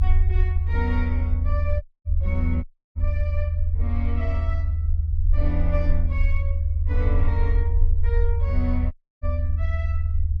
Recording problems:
rumble; below 80 Hz, SNR -9 dB
dropout; at 2 s, at 2.5 s and at 9 s

